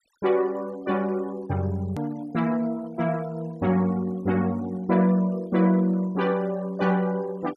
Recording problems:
denoising artefacts; signal-to-artefact ratio 26 dB
hard cut with a click; at 2 s

